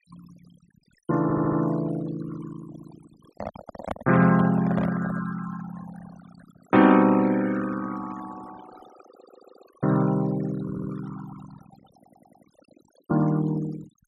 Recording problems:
denoising artefacts; signal-to-artefact ratio 17 dB
stutter; 4 times, first at 1 s
microphone handling noise; from 3.5 to 5 s; peak -2 dB vs average level

